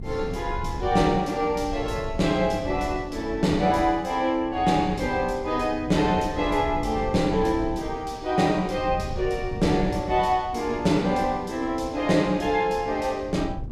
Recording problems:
wind noise; below 130 Hz, SNR 13 dB

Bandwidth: 15.5 kHz